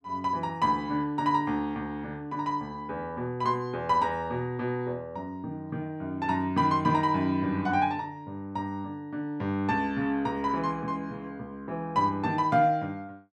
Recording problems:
none

